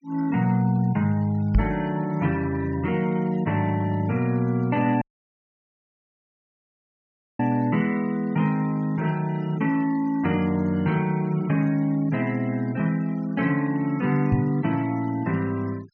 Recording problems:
treble cut off; nothing above 6.6 kHz
noise reduction artefacts; signal-to-artefact ratio 25 dB
knock on the microphone; at 1.5 s and at 14 s; peak +6 dB vs average level
audio cutting out; at 5 s for 2.5 s

